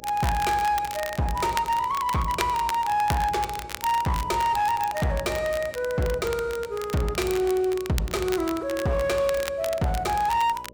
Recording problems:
distorted audio; hard clipping, uneven, signal-to-distortion ratio 11 dB
hum; 60 Hz, harmonics up to 600 Hz, SNR 24 dB
crackle; vinyl, SNR 12 dB

